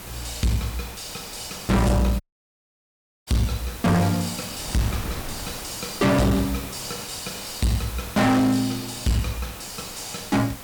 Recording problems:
distorted audio; hard clipping, uneven, signal-to-distortion ratio 6 dB
background hiss; slope -3 dB per octave, SNR 12 dB
wind noise; below 600 Hz, SNR 19 dB
dropout; at 2 s for 1 s

